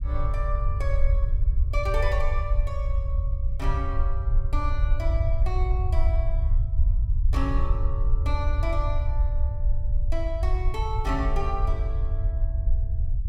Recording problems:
rumble; below 66 Hz, SNR -7 dB

